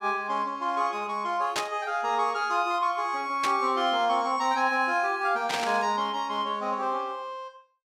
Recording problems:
static burst; at 1.5 s, at 3.5 s and at 5.5 s; peak +1 dB vs average level

